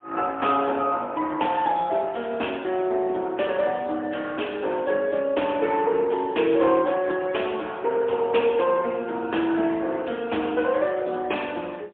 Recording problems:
telephone audio; 260 Hz to 3.5 kHz, AMR-NB, then MP3

